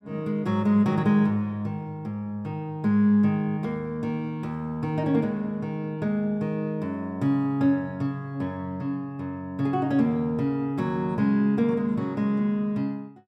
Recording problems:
none

